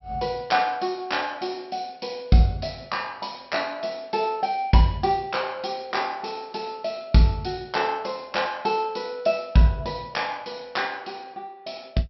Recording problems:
low-pass filter; nothing above 5.7 kHz

